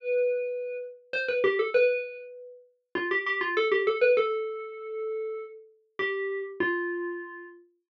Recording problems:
none

